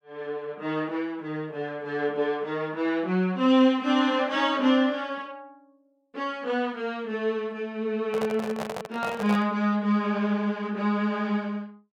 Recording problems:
handling noise; from 8 to 9.5 s; peak -3 dB vs average level

